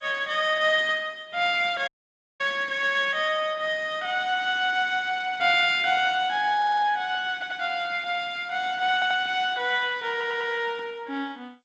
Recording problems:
lossy codec; MP2, then G.722, log-spectral distance 3 dB, nothing above 7.3 kHz
audio cutting out; at 2 s for 0.5 s
audio stuttering; 4 times, first at 6.5 s

